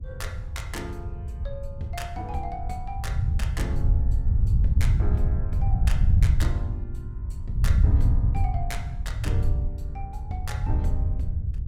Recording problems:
wind noise; below 98 Hz, SNR -11 dB

